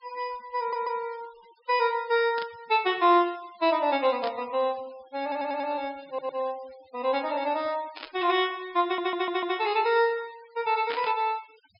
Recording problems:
treble missing; nothing above 5.5 kHz
noise reduction artefacts; signal-to-artefact ratio 23 dB
audio stuttering; 4 times, first at 0.5 s
burst of static; 4 times, first at 2.5 s; peak -5 dB vs average level

